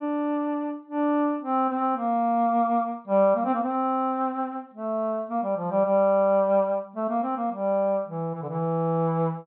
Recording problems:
low-pass filter; nothing above 4.1 kHz

